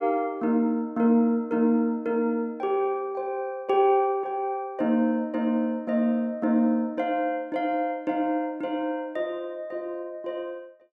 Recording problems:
none

